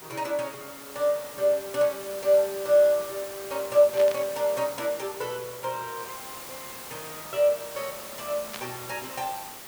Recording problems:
background hiss; slope -2 dB per octave, SNR 13 dB
static burst; at 4 s and at 8.5 s; peak -6 dB vs average level

